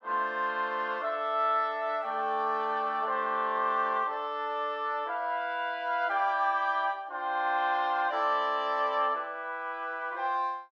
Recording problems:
none

